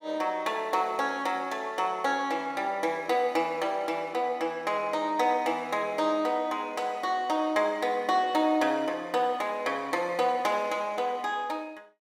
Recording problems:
none

